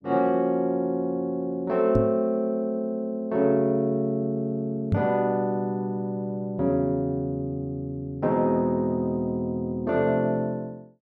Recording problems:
microphone thump; at 2 s and at 5 s; peak +5 dB vs average level

